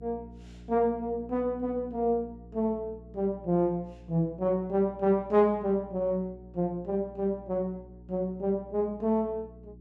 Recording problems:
hum; 60 Hz, harmonics up to 420 Hz, SNR 20 dB

